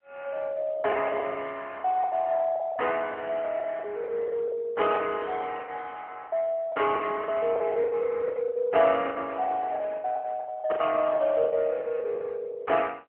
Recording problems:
telephone audio; 340 Hz to 3.2 kHz, AMR-NB
packet loss; 16% of the sound replaced, filled with the last packet

